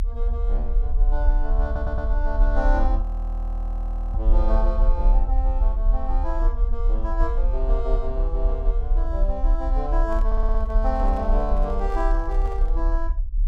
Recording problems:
rumble; below 42 Hz, strongest tone 36 Hz, SNR -6 dB
audio stuttering; at 1.5 s and at 10 s
audio freezing; at 3 s for 1 s
handling noise; from 10 to 13 s; peak -9 dB vs average level

